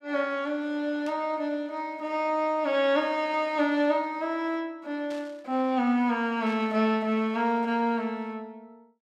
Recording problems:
static burst; at 1 s, at 5 s and at 6.5 s; peak -15 dB vs average level

